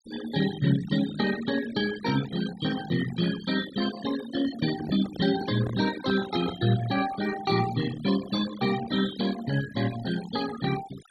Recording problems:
denoising artefacts; signal-to-artefact ratio 12 dB
handling noise; from 4.5 to 6.5 s; peak -5 dB vs average level

